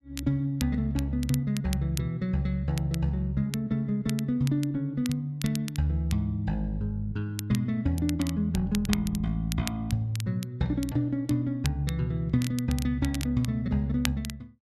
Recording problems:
crackling; vinyl, SNR 13 dB

